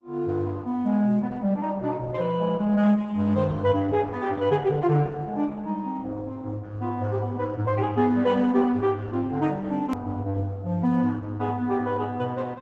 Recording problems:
lossy codec; Opus, log-spectral distance 3 dB, nothing above 14.6 kHz
edit click; at 10 s

